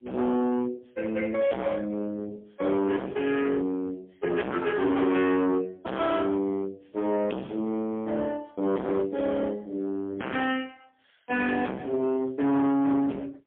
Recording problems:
telephone audio; 190 Hz to 3.3 kHz, AMR-NB, then MP3
distortion; hard clipping, uneven, signal-to-distortion ratio 3 dB

